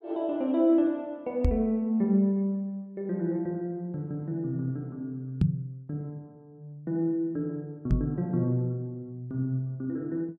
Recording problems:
microphone thump; at 1.5 s, at 5.5 s and at 8 s; peak +9 dB vs average level

